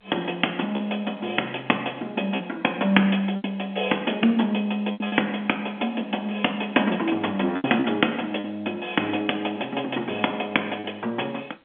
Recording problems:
phone line; 240 Hz to 3.4 kHz, G.711
packet loss; 4% of the sound replaced, filled with repeated pitch periods

